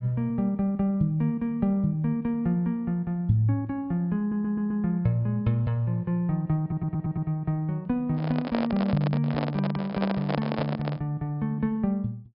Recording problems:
low-pass filter; nothing above 5.5 kHz
stutter; at 4 s and at 6.5 s
handling noise; from 8 to 11 s; peak +1 dB vs average level

